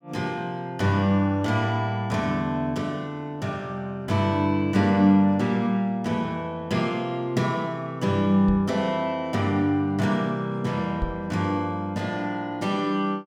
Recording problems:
microphone thump; at 8.5 s and at 11 s; peak 0 dB vs average level

